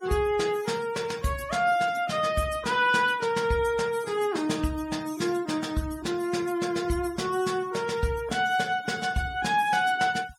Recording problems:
denoising artefacts; signal-to-artefact ratio 18 dB

